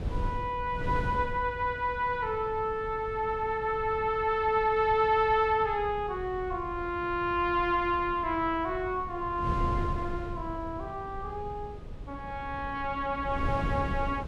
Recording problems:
wind noise; below 160 Hz, SNR 10 dB

